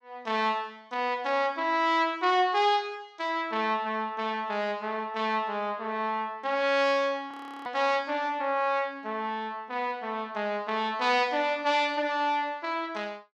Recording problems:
frozen audio; at 7.5 s

